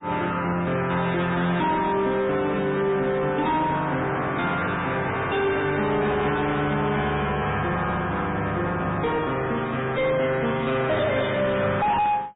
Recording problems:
treble missing; nothing above 3.7 kHz
lossy compression; MP3, log-spectral distance 3 dB
distorted audio; soft clipping, signal-to-distortion ratio 6 dB
crackling; at 10 s; loose cable, SNR 28 dB

